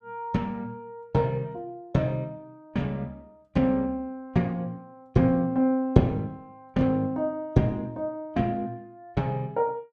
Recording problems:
none

